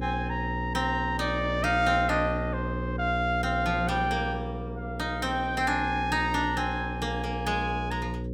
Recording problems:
hum; 60 Hz, harmonics up to 540 Hz, SNR 6 dB

